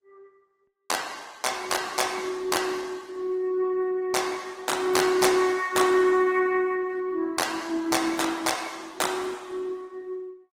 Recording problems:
lossy compression; Opus, log-spectral distance 4 dB

